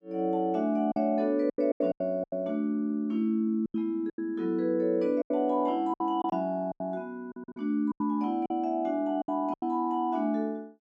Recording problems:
lost packets; 11% of the sound replaced, filled with silence

